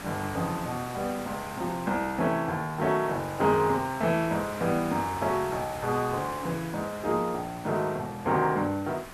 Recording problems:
hiss; SNR 13 dB

